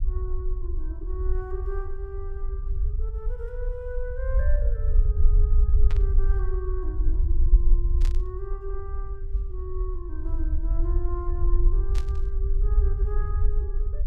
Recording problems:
rumble; below 52 Hz, strongest tone 22 Hz, SNR -12 dB
static burst; at 6 s, at 8 s and at 12 s; peak +2 dB vs average level

